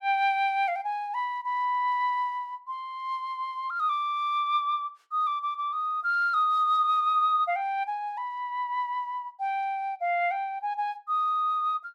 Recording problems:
none

